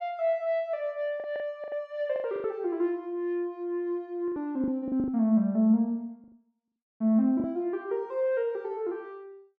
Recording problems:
lost packets; 7% of the sound replaced, filled with the last packet

